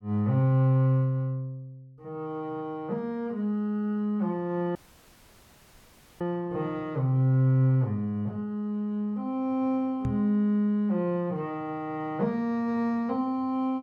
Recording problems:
audio cutting out; at 5 s for 1.5 s
microphone thump; at 10 s; peak 0 dB vs average level

